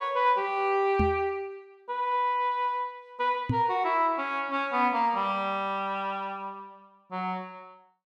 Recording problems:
knock on the microphone; at 1 s and at 3.5 s; peak +4 dB vs average level

